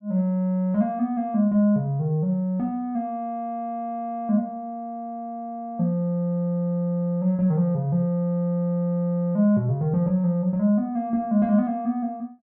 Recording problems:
none

